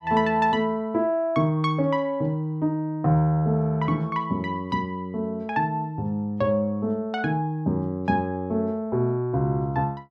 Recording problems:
none

